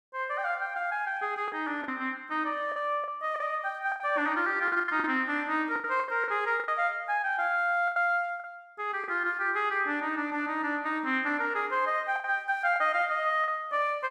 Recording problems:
lost packets; 8% of the sound replaced, filled with the last packet

